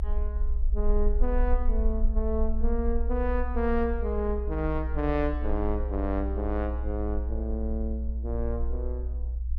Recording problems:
low-frequency rumble; below 60 Hz, SNR -1 dB

